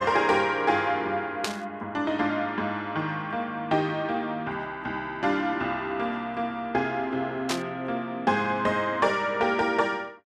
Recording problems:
static burst; at 1.5 s and at 7.5 s; peak +2 dB vs average level

